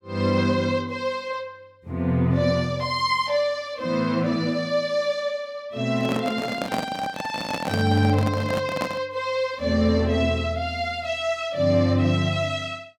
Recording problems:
handling noise; from 6 to 9 s; peak 0 dB vs average level

